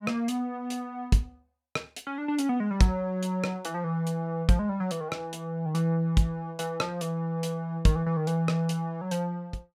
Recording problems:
none

